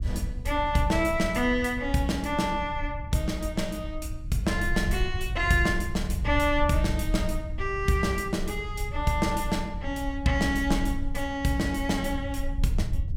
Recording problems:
low-frequency rumble; below 76 Hz, SNR 7 dB

